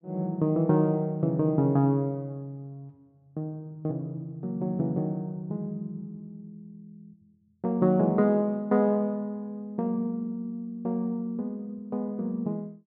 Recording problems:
none

